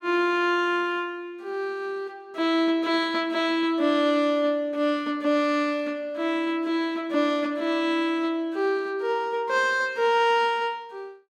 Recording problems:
none

